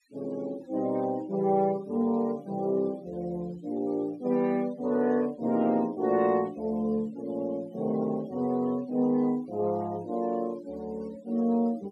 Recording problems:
noise reduction artefacts; signal-to-artefact ratio 24 dB

